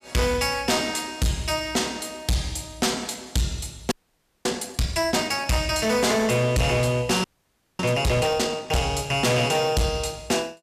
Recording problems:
distortion; hard clipping, signal-to-distortion ratio 7 dB
audio freezing; at 4 s for 0.5 s and at 7 s for 0.5 s

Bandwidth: 14.5 kHz